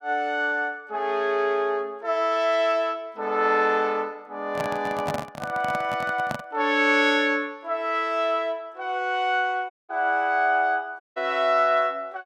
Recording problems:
handling noise; from 4.5 to 6.5 s; peak -1 dB vs average level
audio cutting out; at 9.5 s and at 11 s

